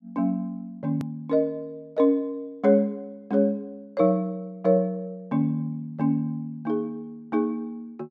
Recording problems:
click at an edit; at 1 s

